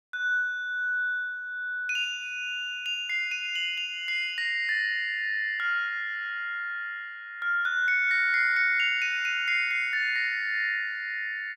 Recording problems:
none

